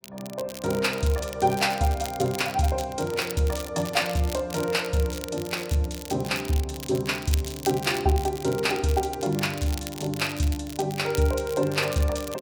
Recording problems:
crackle; vinyl, SNR 13 dB

